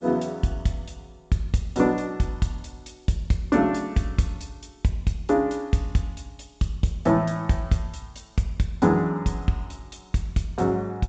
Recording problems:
lossy compression; G.722, log-spectral distance 3 dB, nothing above 7.3 kHz

